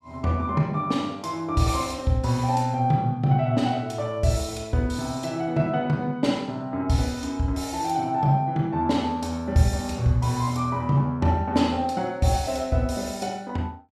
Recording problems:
none

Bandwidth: 14 kHz